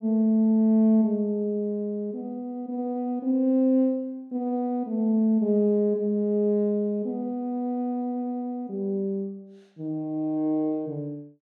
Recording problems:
none

